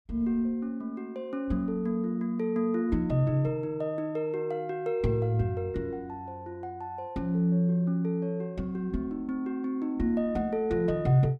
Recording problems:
none

